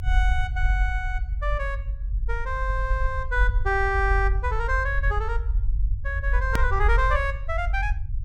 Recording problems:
low-frequency rumble; below 56 Hz, strongest tone 46 Hz, SNR 0 dB
edit click; at 6.5 s

